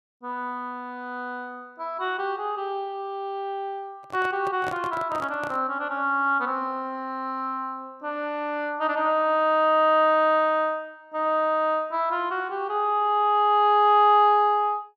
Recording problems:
handling noise; from 4 to 5.5 s; peak -7 dB vs average level

